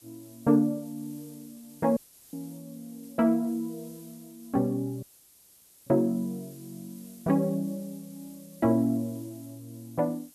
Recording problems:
hiss; SNR 24 dB
audio cutting out; at 2 s and at 5 s for 1 s

